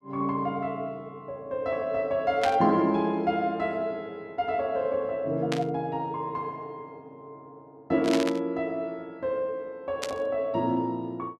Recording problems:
static burst; 4 times, first at 2.5 s; peak +2 dB vs average level

